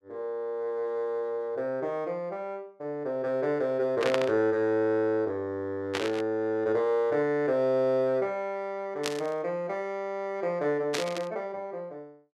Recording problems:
burst of static; 4 times, first at 4 s; peak +3 dB vs average level

